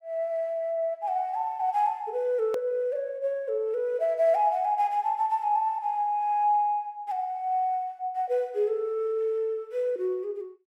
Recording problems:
edit click; at 2.5 s

